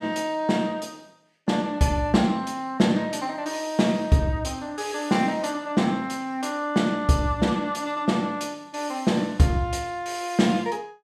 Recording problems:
none

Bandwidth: 14.5 kHz